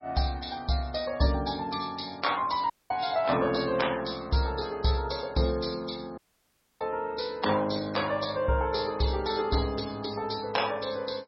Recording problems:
lossy codec; MP3, log-spectral distance 8 dB, nothing above 5.5 kHz
dropout; at 2.5 s and at 6 s for 0.5 s

